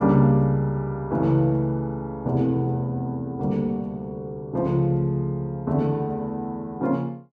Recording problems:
none

